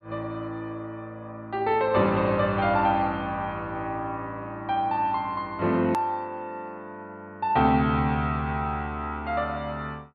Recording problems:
treble missing; nothing above 4.7 kHz
edit click; at 6 s

